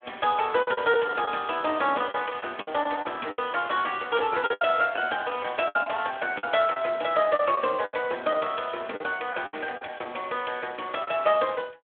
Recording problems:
telephone audio; 220 Hz to 3.4 kHz, Speex
packet loss; 10% of the sound replaced, filled with the last packet

